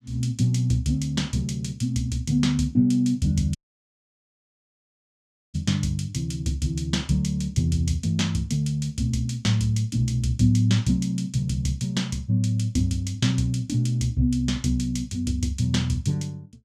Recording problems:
dropout; at 3.5 s for 2 s

